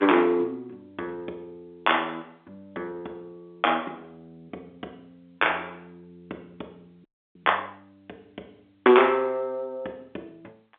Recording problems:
phone line; 260 Hz to 3.6 kHz, G.711
frozen audio; at 7 s

